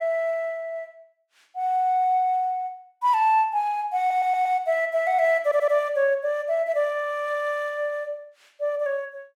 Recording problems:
stutter; at 4 s and at 5.5 s

